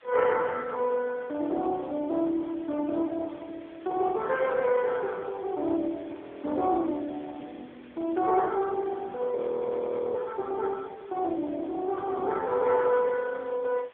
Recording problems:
phone line; 260 Hz to 2.6 kHz, AMR-NB
background hiss; SNR 27 dB
audio freezing; at 6 s and at 9.5 s for 1 s

